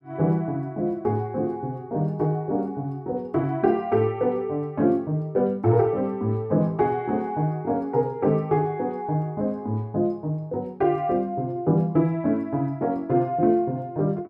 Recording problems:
none

